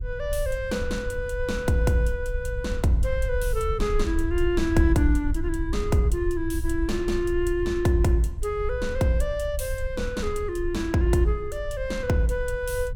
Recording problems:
low-frequency rumble; below 66 Hz, SNR 7 dB

